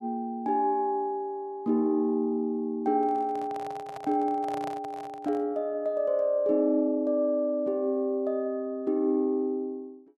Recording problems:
microphone handling noise; from 3 to 5.5 s; peak -7 dB vs average level

